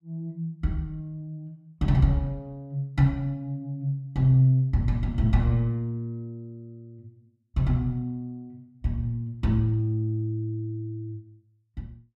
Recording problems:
none

